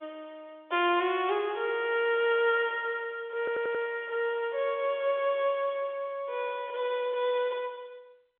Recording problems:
phone line; 300 Hz to 3.7 kHz, G.711
stutter; at 3.5 s

